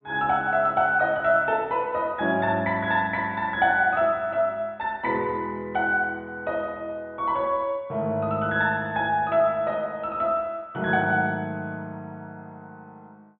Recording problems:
treble cut off; nothing above 4 kHz

